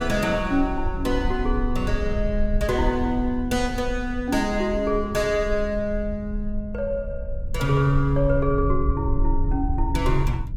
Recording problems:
low-frequency rumble; below 62 Hz, SNR 6 dB

